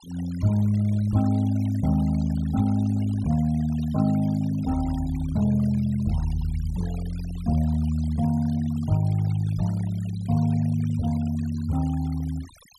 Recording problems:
noise reduction artefacts; signal-to-artefact ratio 22 dB

